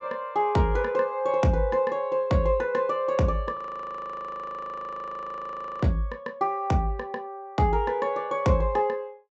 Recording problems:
low-pass filter; nothing above 8 kHz
frozen audio; at 3.5 s for 2.5 s

